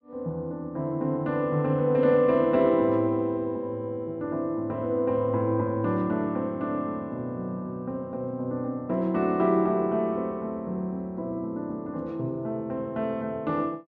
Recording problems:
none

